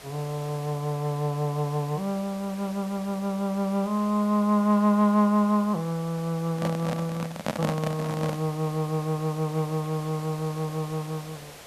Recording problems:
background hiss; SNR 18 dB
microphone handling noise; from 6.5 to 8.5 s; peak +3 dB vs average level

